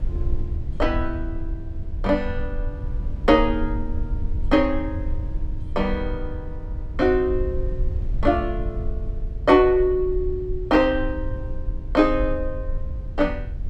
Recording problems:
rumble; below 68 Hz, SNR 8 dB

